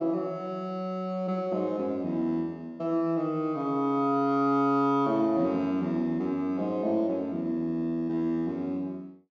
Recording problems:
treble cut off; nothing above 8 kHz

